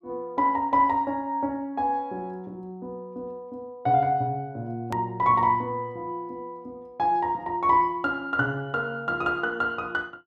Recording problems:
edit click; at 5 s

